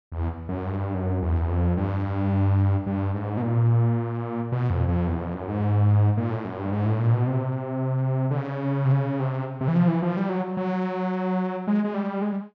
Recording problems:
none

